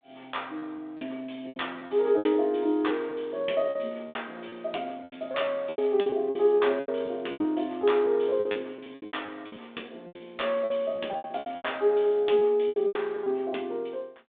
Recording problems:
telephone audio; 220 Hz to 3.6 kHz, G.726
lost packets; 15% of the sound replaced, filled with repeated pitch periods

